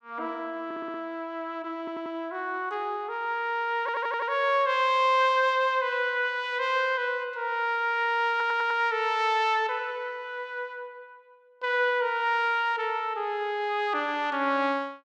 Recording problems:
audio stuttering; 4 times, first at 0.5 s

